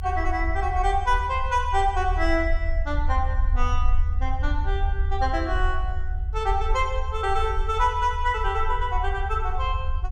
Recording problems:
rumble; below 72 Hz, SNR 2 dB

